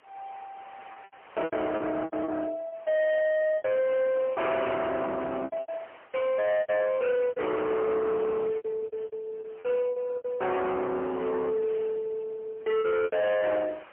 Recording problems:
telephone audio; 390 Hz to 2.9 kHz, AMR-NB, then MP3
distortion; hard clipping, uneven, signal-to-distortion ratio 8 dB
wind on the microphone; below 2.2 kHz, SNR 23 dB
packet loss; 10% of the sound replaced, filled with repeated pitch periods

